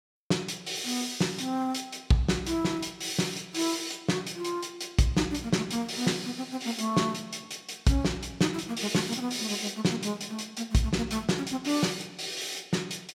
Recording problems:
none

